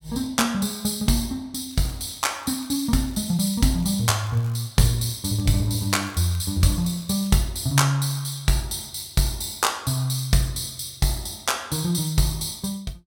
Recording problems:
crackle; from 1.5 to 4.5 s and from 5.5 to 7.5 s; loose cable, SNR 25 dB

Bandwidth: 17 kHz